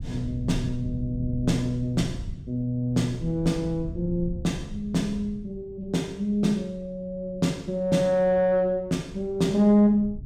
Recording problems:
low-frequency rumble; below 140 Hz, SNR 14 dB

